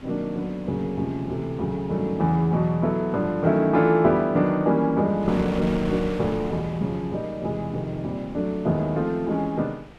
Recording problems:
wind noise; below 1 kHz, SNR 17 dB

